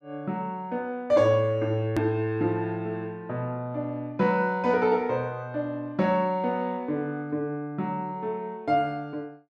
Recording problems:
click at an edit; at 2 s

